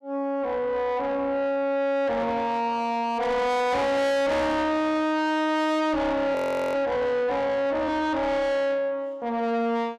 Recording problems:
distorted audio; soft clipping, signal-to-distortion ratio 6 dB
frozen audio; at 6.5 s

